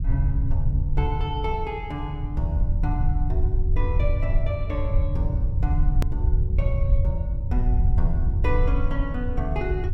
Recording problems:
rumble; below 78 Hz, SNR -6 dB
edit click; at 6 s

